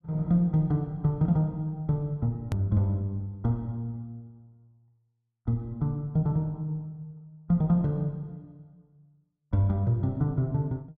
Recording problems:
edit click; at 2.5 s

